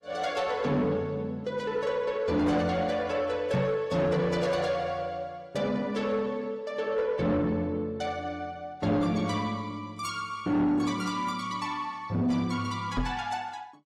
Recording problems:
codec artefacts; AAC, log-spectral distance 2 dB, nothing above 15.5 kHz
distortion; soft clipping, signal-to-distortion ratio 11 dB
microphone thump; at 3.5 s and at 13 s; peak +5 dB vs average level

